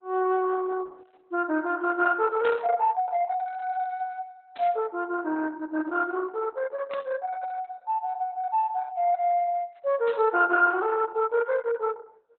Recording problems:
codec artefacts; Opus, log-spectral distance 3 dB
burst of static; 4 times, first at 2.5 s; peak -13 dB vs average level

